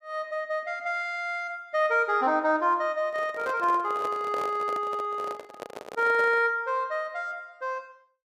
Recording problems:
handling noise; from 3 to 6.5 s; peak -6 dB vs average level

